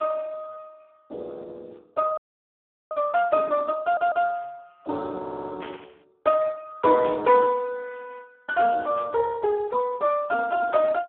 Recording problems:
phone line; 320 Hz to 2.5 kHz, Speex
frozen audio; at 2 s for 0.5 s
static burst; 4 times, first at 3 s; peak -11 dB vs average level
stutter; at 4 s and at 5 s

